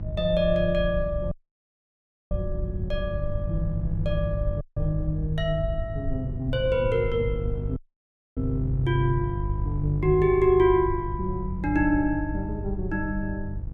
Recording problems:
hum; 50 Hz, harmonics up to 500 Hz, SNR 7 dB
rumble; below 82 Hz, SNR 9 dB
audio cutting out; at 1.5 s for 1 s, at 4.5 s and at 8 s for 0.5 s

